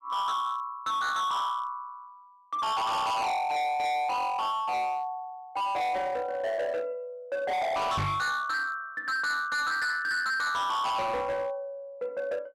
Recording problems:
distortion; hard clipping, signal-to-distortion ratio 6 dB
microphone thump; at 8 s; peak +4 dB vs average level

